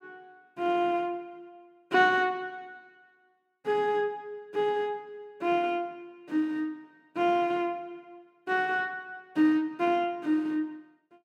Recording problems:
none

